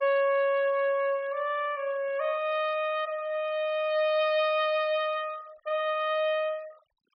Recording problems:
treble missing; nothing above 5.5 kHz
denoising artefacts; signal-to-artefact ratio 27 dB

